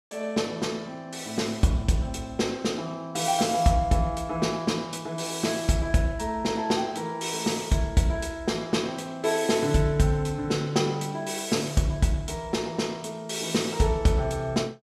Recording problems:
none

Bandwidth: 14.5 kHz